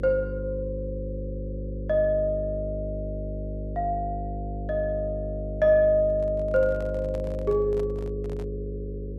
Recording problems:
electrical hum; 50 Hz, harmonics up to 550 Hz, SNR 7 dB
microphone handling noise; from 6 to 8.5 s; peak -11 dB vs average level

